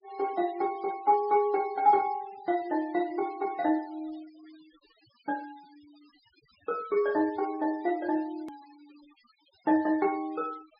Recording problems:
treble missing; nothing above 5.5 kHz
denoising artefacts; signal-to-artefact ratio 26 dB
edit click; at 8.5 s

